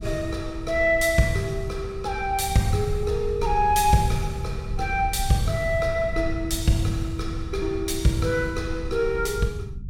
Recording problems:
rumble; below 90 Hz, SNR 9 dB

